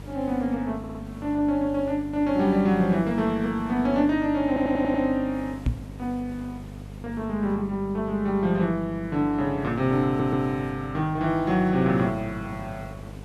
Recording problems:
hum; 50 Hz, harmonics up to 700 Hz, SNR 15 dB
background hiss; slope -6 dB per octave, SNR 23 dB
stutter; at 1 s, at 4.5 s and at 10 s
microphone bump; at 5.5 s; peak +4 dB vs average level

